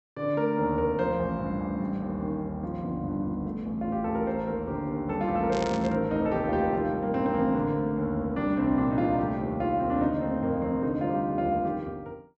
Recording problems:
low-pass filter; nothing above 7.9 kHz
static burst; at 5.5 s; peak -7 dB vs average level

